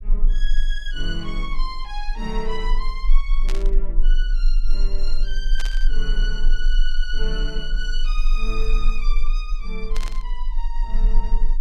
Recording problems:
rumble; below 30 Hz, strongest tone 22 Hz, SNR -7 dB
static burst; at 3.5 s, at 5.5 s and at 10 s; peak +4 dB vs average level

